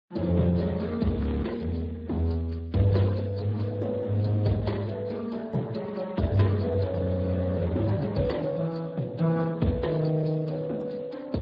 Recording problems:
lossy codec; MP3, then Speex, log-spectral distance 3 dB
frozen audio; at 1 s and at 7 s for 0.5 s

